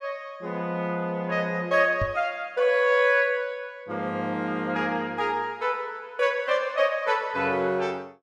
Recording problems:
knock on the microphone; at 2 s; peak -1 dB vs average level

